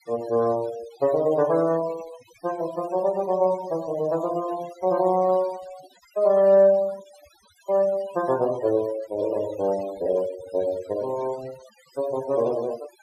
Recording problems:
noise reduction artefacts; signal-to-artefact ratio 20 dB

